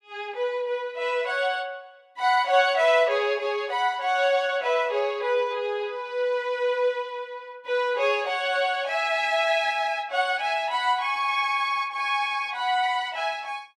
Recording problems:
none

